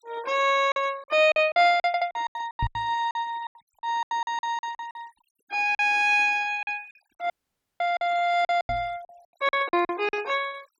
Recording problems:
denoising artefacts; signal-to-artefact ratio 26 dB
packet loss; 15% of the sound replaced, filled with silence
audio stuttering; at 2 s
knock on the microphone; at 2.5 s and at 8.5 s; peak 0 dB vs average level
dropout; at 7.5 s for 0.5 s

